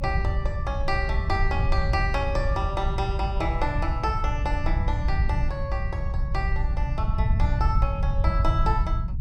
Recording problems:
rumble; below 88 Hz, SNR -3 dB

